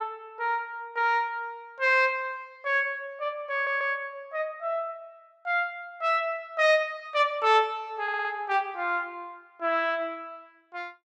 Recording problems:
stutter; at 3.5 s and at 8 s

